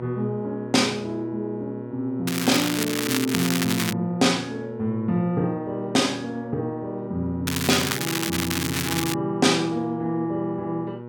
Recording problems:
mains hum; 60 Hz, harmonics up to 1.4 kHz, SNR 11 dB
crackle; from 2.5 to 4 s and from 7.5 to 9 s; loose cable, SNR 2 dB

